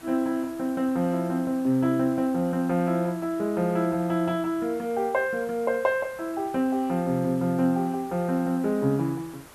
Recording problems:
hiss; SNR 22 dB

